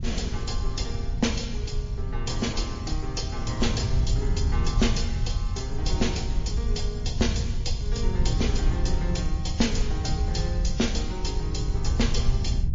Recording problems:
lossy codec; MP3, then MP3, log-spectral distance 5 dB
low-frequency rumble; below 80 Hz, SNR 0 dB
wind noise; below 100 Hz, SNR 3 dB

